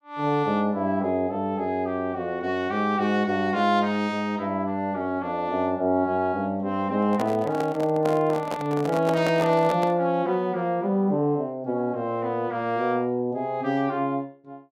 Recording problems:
microphone handling noise; from 7 to 10 s; peak 0 dB vs average level

